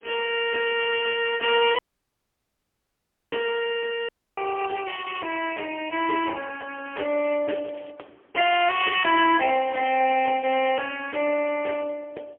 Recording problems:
telephone audio; 300 Hz to 3.2 kHz, AMR-NB, then MP3
dropout; at 2 s for 1.5 s and at 4 s
crackling; at 3.5 s and from 6.5 to 8 s; loose cable, SNR 29 dB

